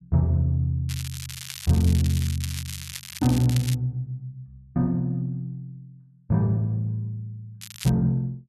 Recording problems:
crackle; from 1 to 4 s and at 7.5 s; loose cable, SNR 11 dB

